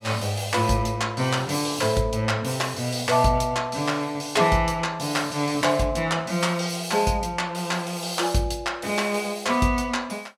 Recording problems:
none

